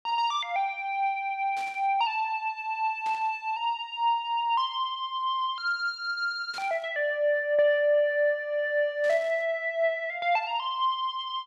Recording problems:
burst of static; 4 times, first at 1.5 s; peak -13 dB vs average level

